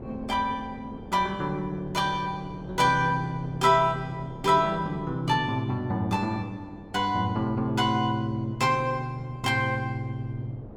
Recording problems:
wind on the microphone; below 420 Hz, SNR 17 dB

